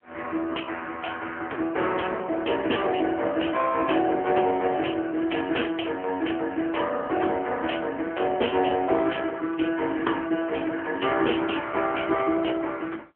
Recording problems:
telephone audio; 280 Hz to 3.2 kHz, AMR-NB

